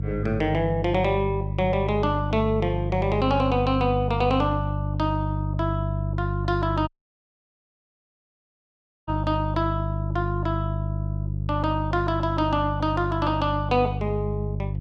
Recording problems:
hum; 50 Hz, harmonics up to 350 Hz, SNR 3 dB
dropout; at 7 s for 2 s

